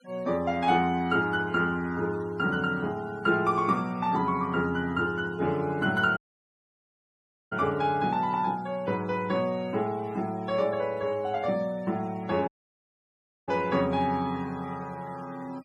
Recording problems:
noise reduction artefacts; signal-to-artefact ratio 24 dB
dropout; at 6 s for 1.5 s and at 12 s for 1 s

